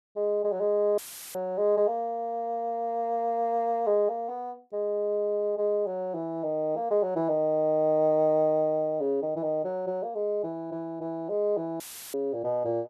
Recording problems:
audio cutting out; at 1 s and at 12 s; filled with static

